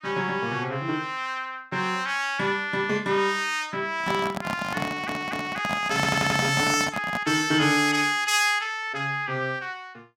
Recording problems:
handling noise; from 4 to 7.5 s; peak 0 dB vs average level
stutter; at 5 s and at 6 s

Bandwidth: 16.5 kHz